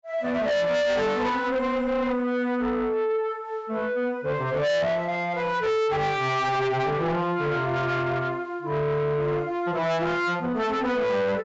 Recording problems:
treble missing; nothing above 8 kHz
distortion; soft clipping, signal-to-distortion ratio 6 dB

